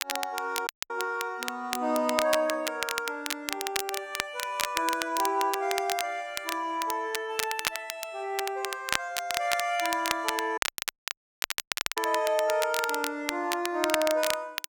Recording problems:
crackling; vinyl, SNR 3 dB
audio cutting out; at 0.5 s and at 11 s for 1.5 s

